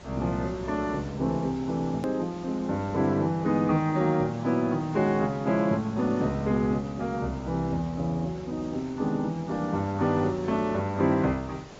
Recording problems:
codec artefacts; AAC, log-spectral distance 3 dB, nothing above 13.1 kHz
background hiss; slope -5 dB per octave, SNR 19 dB
hard cut with a click; at 2 s

